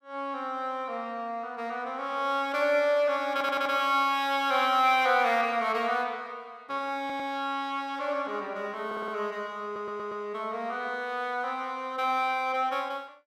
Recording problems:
stutter; 4 times, first at 3.5 s

